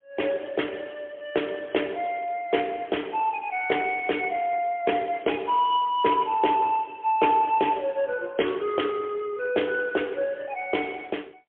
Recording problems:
telephone audio; 300 Hz to 3.3 kHz, AMR-NB, then MP3

